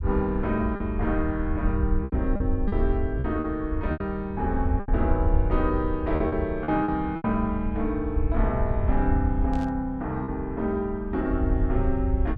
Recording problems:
low-frequency rumble; below 78 Hz, SNR 2 dB
packet loss; 6% of the sound replaced, filled with repeated pitch periods
static burst; at 9.5 s; peak -16 dB vs average level

